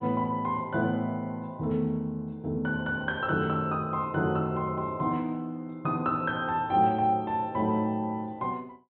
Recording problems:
low-pass filter; nothing above 4 kHz

